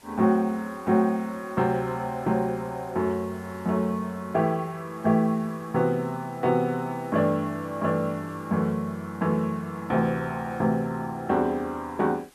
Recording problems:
hiss; slope -2 dB per octave, SNR 27 dB

